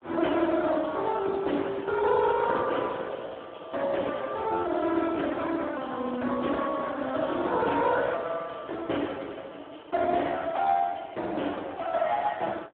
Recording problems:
telephone audio; 260 Hz to 3.6 kHz, Speex

